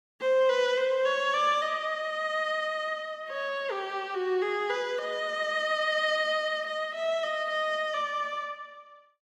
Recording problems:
none

